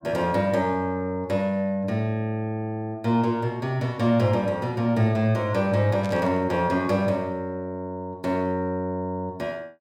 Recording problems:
burst of static; at 6 s; peak -12 dB vs average level

